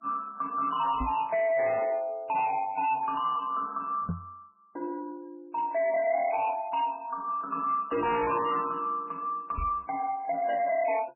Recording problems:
lossy codec; MP3, log-spectral distance 3 dB, nothing above 2.9 kHz
distortion; hard clipping, signal-to-distortion ratio 10 dB
microphone bump; at 1 s, at 4 s and at 9.5 s; peak +1 dB vs average level

